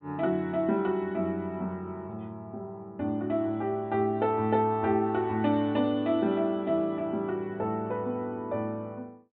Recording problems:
treble cut off; nothing above 4 kHz

